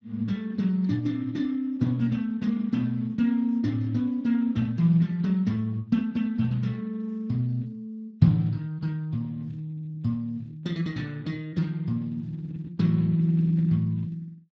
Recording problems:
codec artefacts; Speex, log-spectral distance 2 dB, nothing above 13.1 kHz

